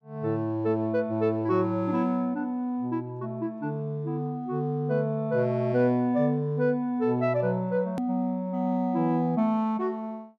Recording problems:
hard cut with a click; at 8 s

